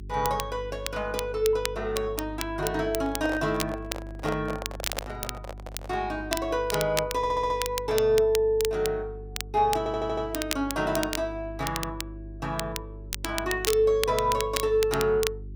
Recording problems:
hum; 50 Hz, harmonics up to 400 Hz, SNR 14 dB
crackle; vinyl, SNR 8 dB
microphone handling noise; from 3 to 6 s; peak -3 dB vs average level
audio stuttering; at 7 s and at 10 s

